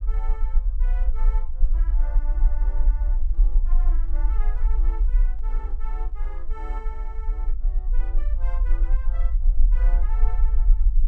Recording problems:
low-frequency rumble; below 40 Hz, strongest tone 26 Hz, SNR -19 dB
microphone handling noise; from 3 to 6.5 s; peak -12 dB vs average level

